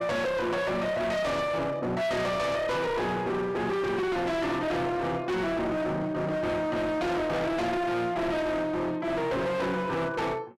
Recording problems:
distortion; hard clipping, signal-to-distortion ratio 6 dB

